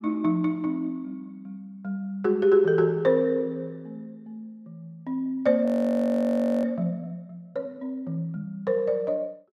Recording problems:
audio freezing; at 5.5 s for 1 s

